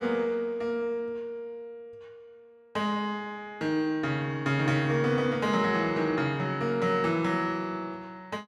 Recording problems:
none

